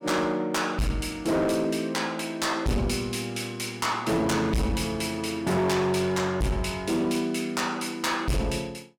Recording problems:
distorted audio; hard clipping, signal-to-distortion ratio 6 dB

